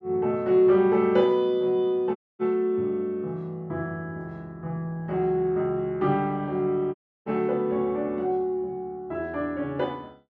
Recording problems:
audio cutting out; at 2 s and at 7 s

